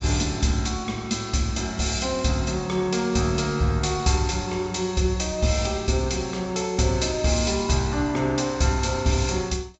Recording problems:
treble cut off; nothing above 7.7 kHz

